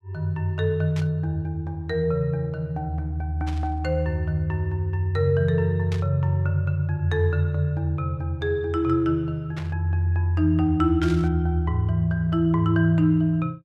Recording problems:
static burst; 5 times, first at 1 s; peak -10 dB vs average level

